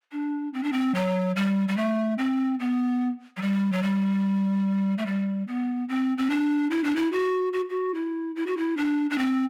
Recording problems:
distorted audio; hard clipping, signal-to-distortion ratio 11 dB

